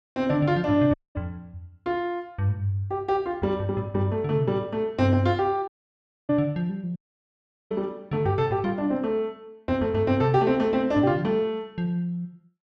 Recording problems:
dropout; at 1 s, at 5.5 s for 0.5 s and at 7 s for 0.5 s

